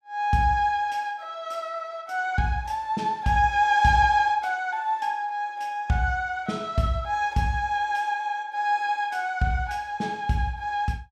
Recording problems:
none

